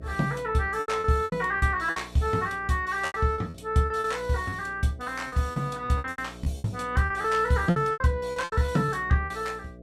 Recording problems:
mains hum; 60 Hz, harmonics up to 660 Hz, SNR 19 dB
lost packets; 14% of the sound replaced, filled with repeated pitch periods

